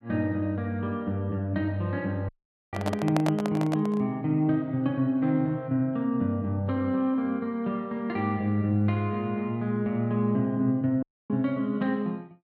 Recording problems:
dropout; at 2.5 s and at 11 s
microphone handling noise; from 2.5 to 4 s; peak +2 dB vs average level

